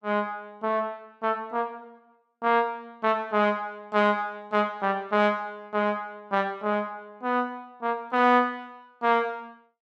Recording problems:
none

